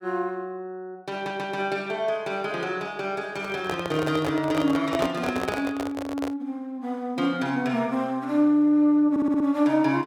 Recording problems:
stutter; at 1 s and at 9 s
microphone handling noise; from 3.5 to 6.5 s; peak +2 dB vs average level

